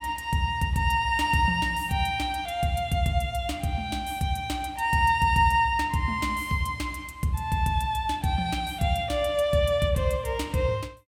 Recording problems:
none

